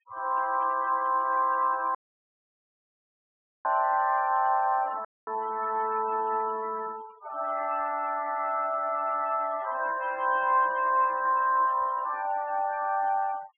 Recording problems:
treble cut off; nothing above 3.2 kHz
denoising artefacts; signal-to-artefact ratio 21 dB
audio cutting out; at 2 s for 1.5 s and at 5 s

